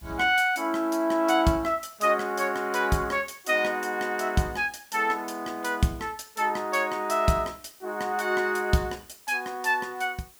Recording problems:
hiss; slope 0 dB per octave, SNR 26 dB

